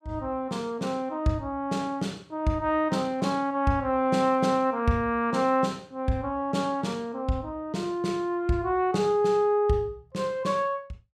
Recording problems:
none

